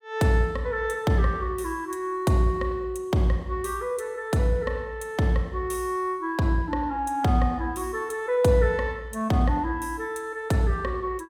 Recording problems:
none

